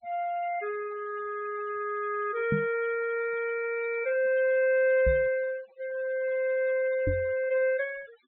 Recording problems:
treble cut off; nothing above 3.8 kHz
denoising artefacts; signal-to-artefact ratio 23 dB
microphone thump; at 2.5 s, at 5 s and at 7 s; peak +2 dB vs average level

